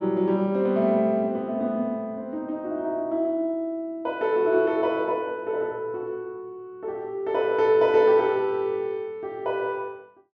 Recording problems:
none

